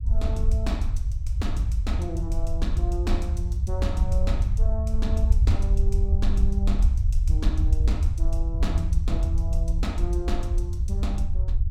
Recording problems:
low-frequency rumble; below 74 Hz, SNR -6 dB

